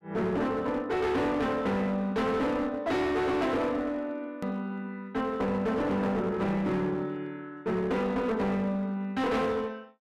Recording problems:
distorted audio; hard clipping, uneven, signal-to-distortion ratio 7 dB
hard cut with a click; at 4.5 s

